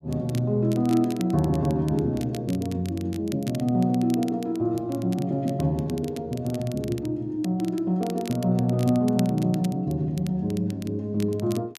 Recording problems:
crackle; vinyl, SNR 20 dB

